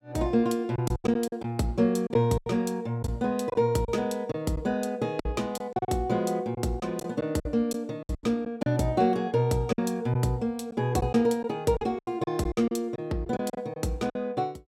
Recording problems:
packet loss; 10% of the sound replaced, filled with silence

